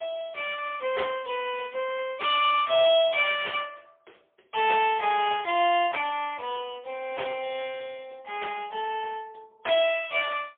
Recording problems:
telephone audio; 300 Hz to 3.4 kHz, AMR-NB, then MP3

